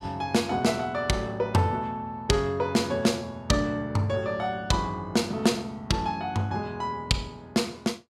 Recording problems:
none

